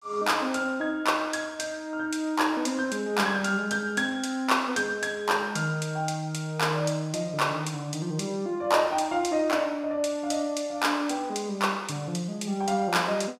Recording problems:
none

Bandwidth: 15.5 kHz